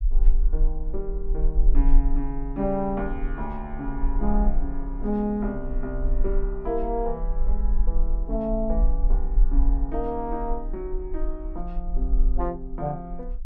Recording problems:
low-frequency rumble; below 38 Hz, strongest tone 22 Hz, SNR -2 dB

